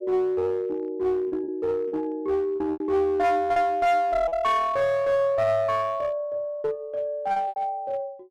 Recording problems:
distortion; hard clipping, uneven, signal-to-distortion ratio 10 dB
packet loss; 6% of the sound replaced, filled with repeated pitch periods

